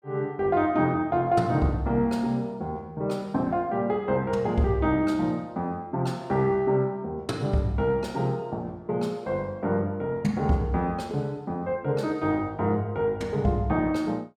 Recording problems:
none

